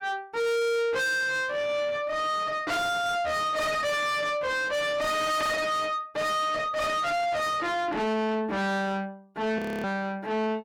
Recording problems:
distortion; soft clipping, signal-to-distortion ratio 6 dB
frozen audio; at 9.5 s

